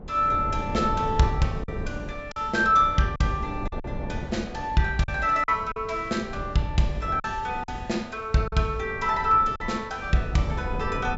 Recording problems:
treble missing; nothing above 8 kHz
wind on the microphone; below 250 Hz, SNR 11 dB
packet loss; 4% of the sound replaced, filled with silence

